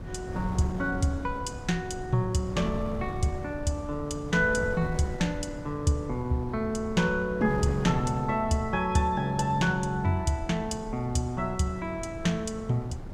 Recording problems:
wind on the microphone; below 230 Hz, SNR 10 dB

